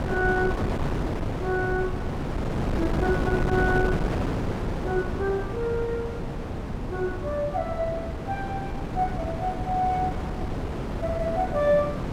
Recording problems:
wind on the microphone; below 450 Hz, SNR 2 dB

